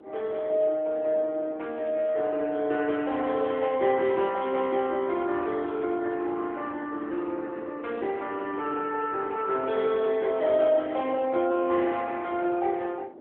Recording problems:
phone line; 280 Hz to 3.2 kHz, AMR-NB
wind on the microphone; below 500 Hz, SNR 19 dB

